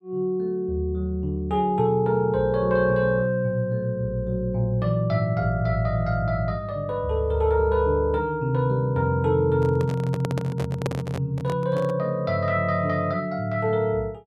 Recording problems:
handling noise; from 9.5 to 12 s; peak -1 dB vs average level

